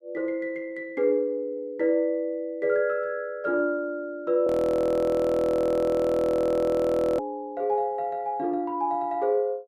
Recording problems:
audio freezing; at 4.5 s for 2.5 s

